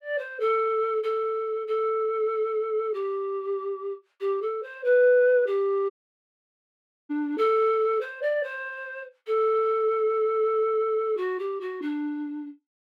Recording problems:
dropout; at 6 s for 1 s

